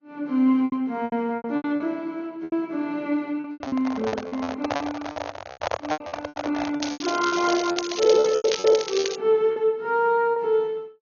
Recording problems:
low-pass filter; nothing above 6.5 kHz
lossy compression; AAC, log-spectral distance 4 dB
lost packets; 14% of the sound replaced, filled with repeated pitch periods
microphone handling noise; from 3.5 to 7 s; peak +2 dB vs average level
crackle; from 7 to 9 s; loose cable, SNR 8 dB

